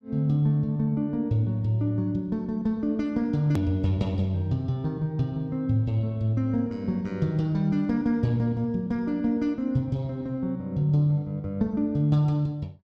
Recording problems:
hard cut with a click; at 3.5 s

